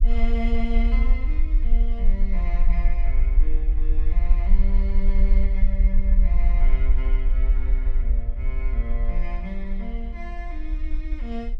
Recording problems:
low-frequency rumble; below 44 Hz, strongest tone 22 Hz, SNR -11 dB

